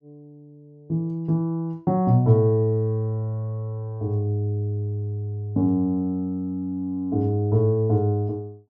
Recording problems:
none

